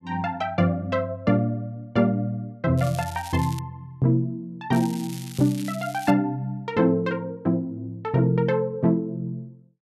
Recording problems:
crackling; at 3 s and from 4.5 to 6 s; loose cable, SNR 17 dB

